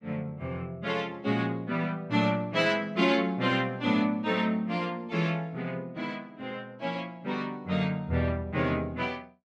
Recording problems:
none

